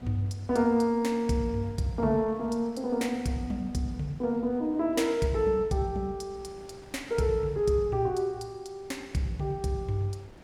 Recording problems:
wind noise; below 790 Hz, SNR 24 dB

